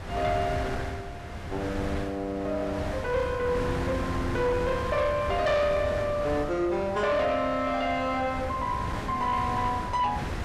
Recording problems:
distorted audio; soft clipping, signal-to-distortion ratio 12 dB
wind on the microphone; below 890 Hz, SNR 7 dB

